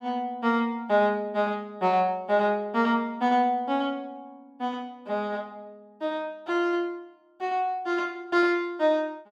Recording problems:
none

